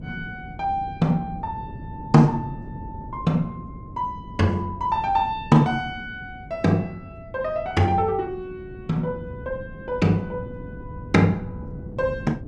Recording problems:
wind on the microphone; below 230 Hz, SNR 15 dB

